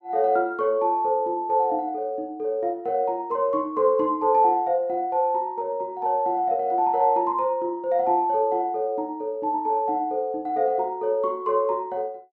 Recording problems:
none

